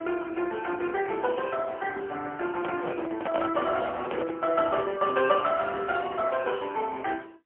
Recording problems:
phone line; 260 Hz to 3.3 kHz, AMR-NB, then MP3
microphone handling noise; from 2.5 to 4.5 s; peak 0 dB vs average level

